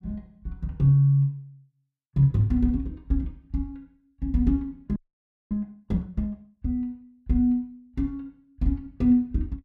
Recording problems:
frozen audio; at 5 s for 0.5 s

